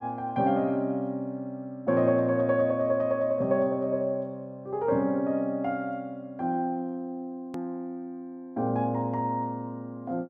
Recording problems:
click at an edit; at 7.5 s

